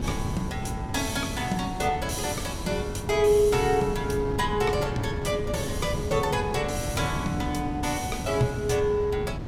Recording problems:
wind noise; below 250 Hz, SNR 7 dB

